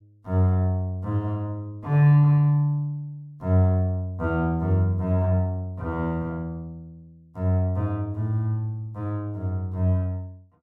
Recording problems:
none

